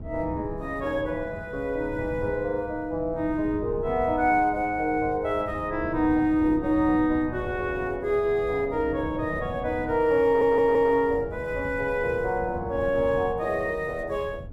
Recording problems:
wind on the microphone; below 190 Hz, SNR 14 dB
audio stuttering; at 10 s

